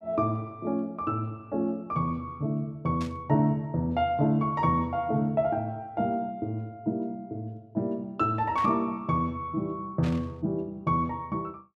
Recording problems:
static burst; at 3 s, at 8.5 s and at 10 s; peak -8 dB vs average level

